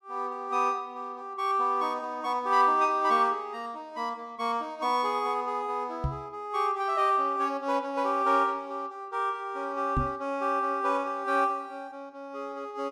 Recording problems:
knock on the microphone; at 6 s and at 10 s; peak +2 dB vs average level

